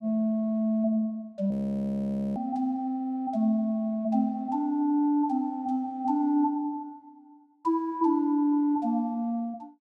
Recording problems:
audio freezing; at 1.5 s for 1 s

